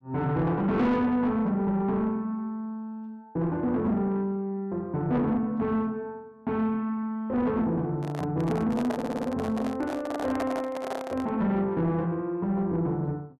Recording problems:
distorted audio; soft clipping, signal-to-distortion ratio 10 dB
handling noise; from 8 to 11 s; peak 0 dB vs average level
stutter; at 9 s

